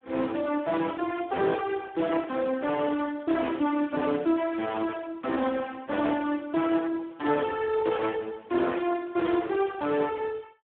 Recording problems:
phone line; 220 Hz to 3.5 kHz, Speex

